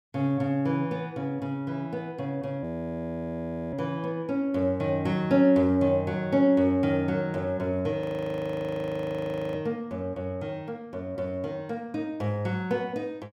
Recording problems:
frozen audio; at 2.5 s for 1 s and at 8 s for 1.5 s

